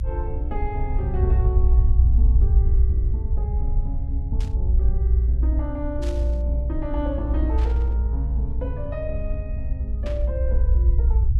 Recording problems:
rumble; below 62 Hz, strongest tone 58 Hz, SNR -10 dB
static burst; 4 times, first at 4.5 s; peak -4 dB vs average level

